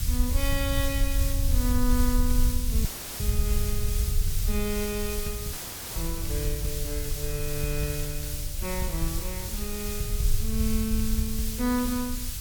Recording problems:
background hiss; SNR 2 dB
low-frequency rumble; below 72 Hz, SNR -1 dB
audio cutting out; at 3 s and at 5.5 s

